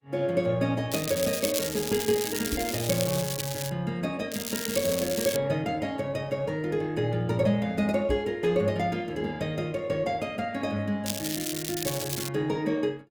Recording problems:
codec artefacts; Opus, log-spectral distance 4 dB, nothing above 19 kHz
crackle; from 1 to 3.5 s, from 4.5 to 5.5 s and from 11 to 12 s; loose cable, SNR 4 dB
knock on the microphone; at 2.5 s and at 8 s; peak +1 dB vs average level

